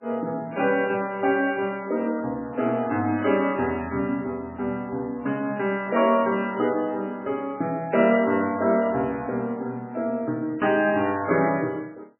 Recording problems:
codec artefacts; MP3, log-spectral distance 2 dB, nothing above 2.6 kHz

